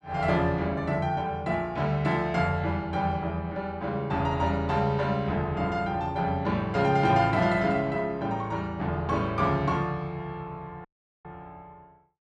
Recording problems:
audio cutting out; at 11 s

